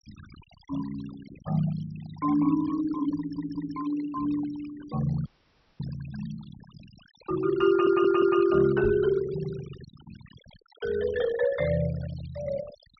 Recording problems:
low-pass filter; nothing above 5.8 kHz
denoising artefacts; signal-to-artefact ratio 18 dB
audio stuttering; at 3 s and at 7.5 s
frozen audio; at 5.5 s for 0.5 s
microphone thump; at 9 s; peak -2 dB vs average level

